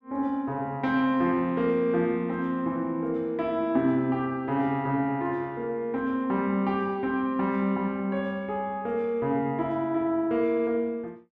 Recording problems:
none

